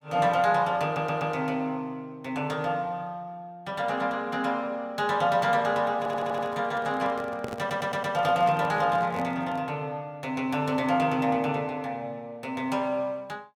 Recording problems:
audio stuttering; at 1 s, at 6 s and at 7.5 s
microphone handling noise; from 6 to 9.5 s; peak -4 dB vs average level

